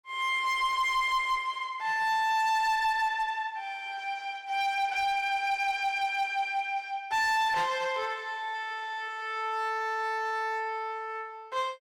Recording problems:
distorted audio; hard clipping, signal-to-distortion ratio 11 dB

